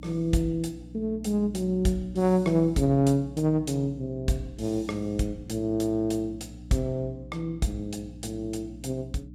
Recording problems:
electrical hum; 60 Hz, harmonics up to 300 Hz, SNR 16 dB

